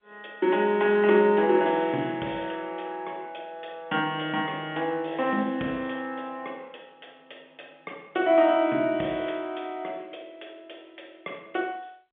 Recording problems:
telephone audio; 220 Hz to 3.5 kHz, G.711

